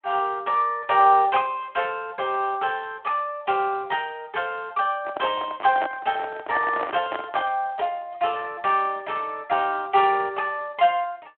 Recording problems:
phone line; 320 Hz to 3.4 kHz, Speex
microphone handling noise; from 5 to 7.5 s; peak -2 dB vs average level

